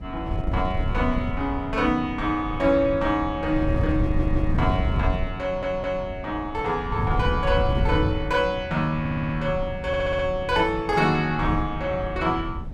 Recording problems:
wind noise; below 130 Hz, SNR 5 dB
stutter; 4 times, first at 4 s

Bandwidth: 15.5 kHz